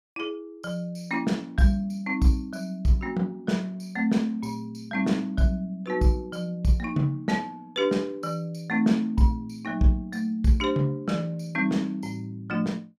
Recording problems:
none

